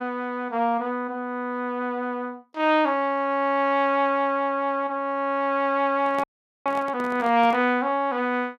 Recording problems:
handling noise; from 6 to 7.5 s; peak -7 dB vs average level
audio freezing; at 6 s

